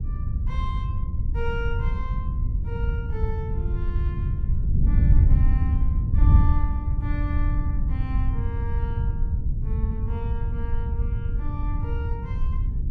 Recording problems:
wind on the microphone; below 90 Hz, SNR -13 dB

